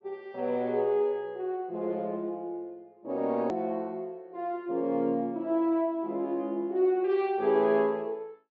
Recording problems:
treble cut off; nothing above 8 kHz
click at an edit; at 3.5 s

